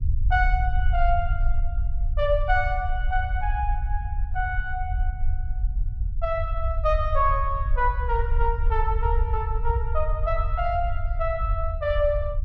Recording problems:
low-frequency rumble; below 60 Hz, SNR 1 dB

